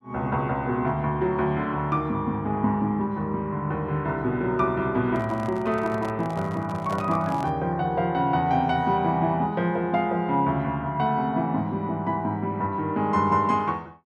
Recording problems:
handling noise; from 5 to 7.5 s; peak -6 dB vs average level

